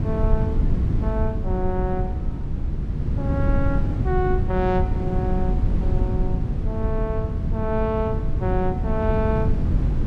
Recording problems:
rumble; below 130 Hz, SNR -3 dB

